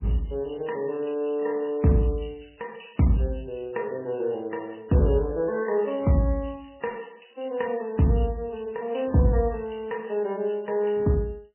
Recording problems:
lossy codec; MP3, log-spectral distance 7 dB, nothing above 3 kHz

